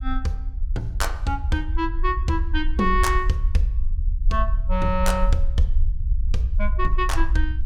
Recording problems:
low-frequency rumble; below 54 Hz, SNR 0 dB

